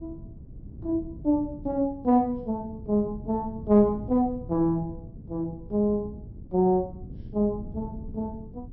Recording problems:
treble missing; nothing above 5.6 kHz
wind noise; below 180 Hz, SNR 15 dB

